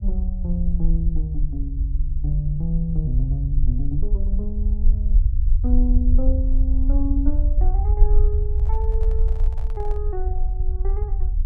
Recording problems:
low-frequency rumble; below 56 Hz, SNR -7 dB
handling noise; from 8.5 to 10 s; peak -12 dB vs average level

